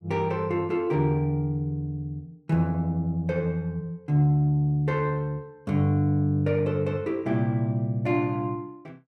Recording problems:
none

